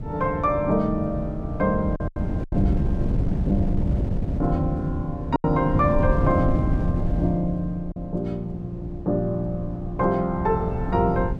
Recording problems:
wind noise; below 170 Hz, SNR 2 dB
packet loss; 3% of the sound replaced, filled with silence

